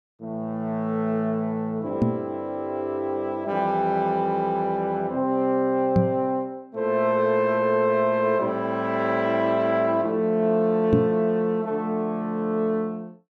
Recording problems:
knock on the microphone; at 2 s, at 6 s and at 11 s; peak +7 dB vs average level

